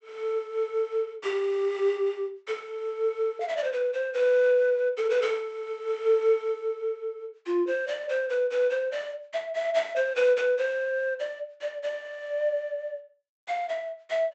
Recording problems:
treble cut off; nothing above 8 kHz

